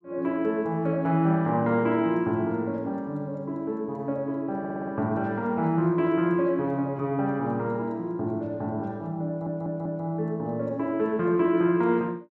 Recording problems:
stutter; at 4.5 s and at 9.5 s

